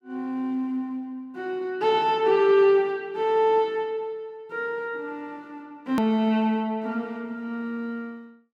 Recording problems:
edit click; at 6 s

